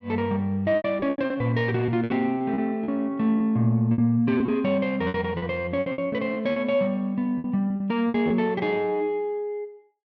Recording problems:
packet loss; 11% of the sound replaced, filled with repeated pitch periods

